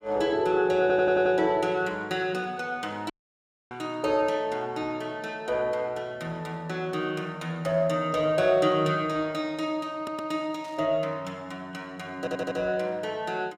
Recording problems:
audio stuttering; at 1 s, at 10 s and at 12 s
dropout; at 3 s for 0.5 s
burst of static; at 11 s; peak -17 dB vs average level

